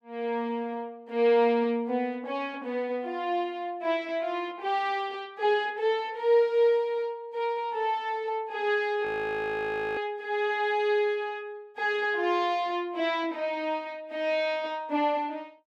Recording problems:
audio freezing; at 9 s for 1 s

